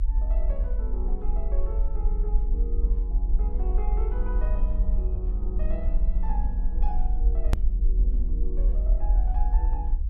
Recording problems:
low-frequency rumble; below 46 Hz, SNR -12 dB
hard cut with a click; at 7.5 s

